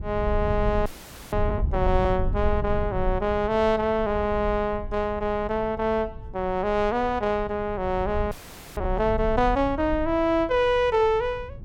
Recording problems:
rumble; below 86 Hz, SNR 9 dB
frozen audio; at 1 s and at 8.5 s

